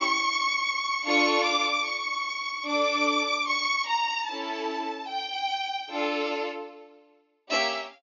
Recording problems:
treble cut off; nothing above 7 kHz

